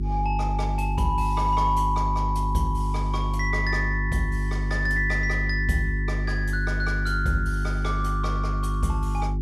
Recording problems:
mains hum; 50 Hz, harmonics up to 400 Hz, SNR 0 dB

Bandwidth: 14 kHz